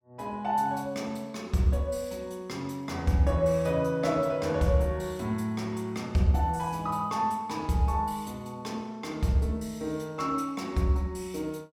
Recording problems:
none

